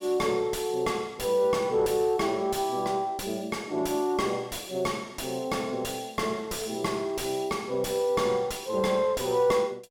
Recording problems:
distorted audio; soft clipping, signal-to-distortion ratio 9 dB

